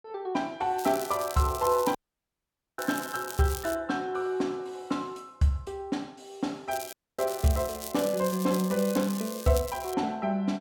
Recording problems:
crackling; from 1 to 4 s and from 6.5 to 10 s; loose cable, SNR 11 dB
audio cutting out; at 2 s for 1 s and at 7 s

